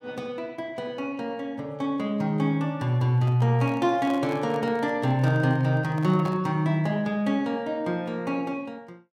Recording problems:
handling noise; from 3 to 6.5 s; peak -8 dB vs average level

